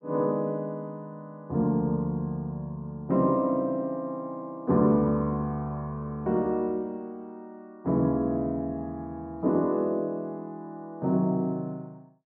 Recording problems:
none

